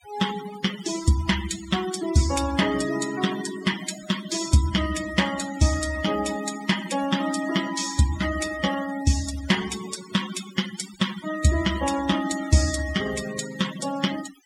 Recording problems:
noise reduction artefacts; signal-to-artefact ratio 10 dB

